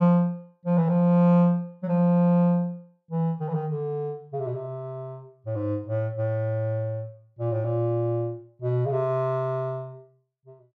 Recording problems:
none

